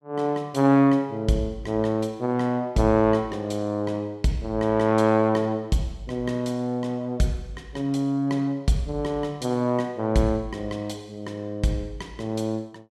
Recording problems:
none

